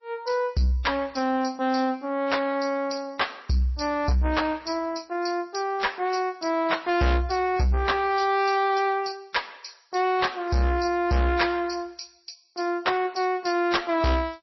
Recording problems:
lossy compression; MP3, then MP3, log-spectral distance 5 dB, nothing above 5.7 kHz
distorted audio; soft clipping, signal-to-distortion ratio 10 dB

